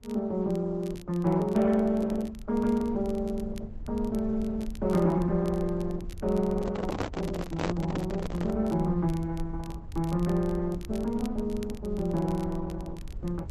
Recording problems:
lossy compression; Opus, log-spectral distance 2 dB
low-frequency rumble; below 76 Hz, SNR 13 dB
crackling; vinyl, SNR 24 dB
microphone handling noise; from 6.5 to 8.5 s; peak +3 dB vs average level

